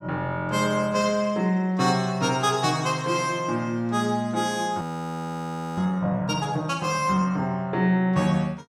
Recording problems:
frozen audio; at 5 s for 1 s

